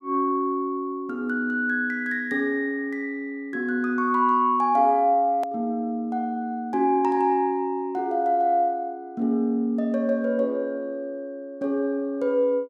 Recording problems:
hard cut with a click; at 5.5 s

